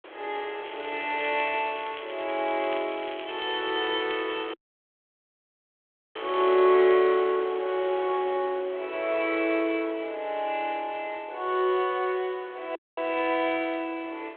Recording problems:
telephone audio; 300 Hz to 3.7 kHz, G.726
wind noise; below 2 kHz, SNR 17 dB
crackling; from 0.5 to 6.5 s; loose cable, SNR 16 dB
audio cutting out; at 4.5 s for 1.5 s and at 13 s

